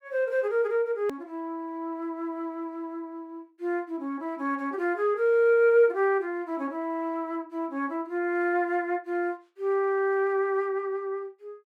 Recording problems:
hard cut with a click; at 1 s

